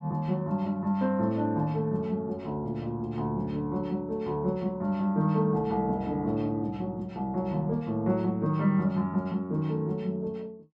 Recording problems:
none

